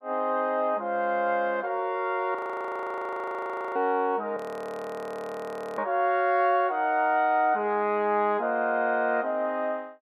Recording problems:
frozen audio; at 2.5 s for 1.5 s and at 4.5 s for 1.5 s

